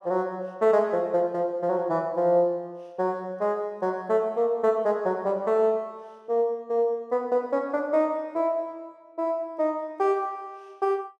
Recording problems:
none

